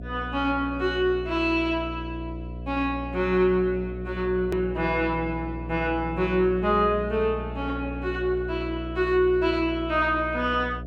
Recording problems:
electrical hum; 60 Hz, harmonics up to 720 Hz, SNR 11 dB
hard cut with a click; at 4.5 s

